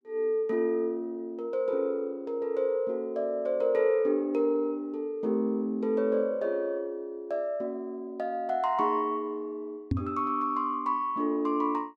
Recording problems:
microphone thump; at 10 s; peak +5 dB vs average level

